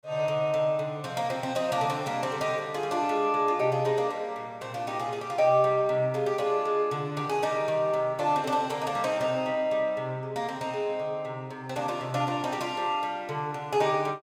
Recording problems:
none

